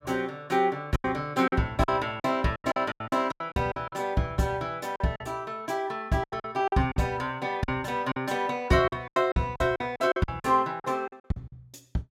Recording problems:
packet loss; 13% of the sound replaced, filled with silence

